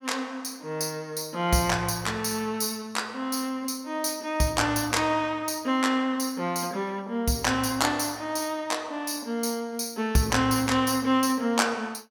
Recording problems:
none

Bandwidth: 17.5 kHz